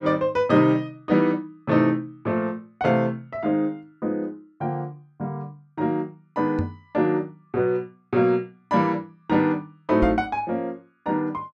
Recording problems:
microphone bump; at 6.5 s and at 10 s; peak +1 dB vs average level

